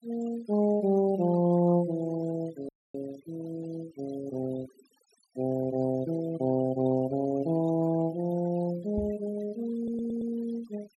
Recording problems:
denoising artefacts; signal-to-artefact ratio 20 dB
audio cutting out; at 2.5 s
knock on the microphone; at 9 s; peak -2 dB vs average level
stutter; at 10 s

